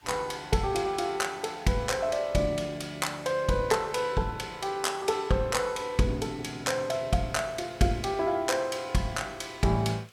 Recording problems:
hiss; SNR 28 dB

